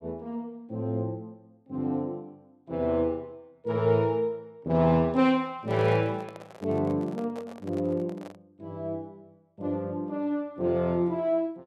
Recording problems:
handling noise; from 5.5 to 8.5 s; peak -11 dB vs average level

